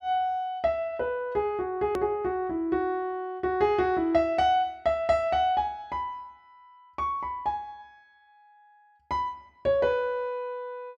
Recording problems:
click at an edit; at 2 s

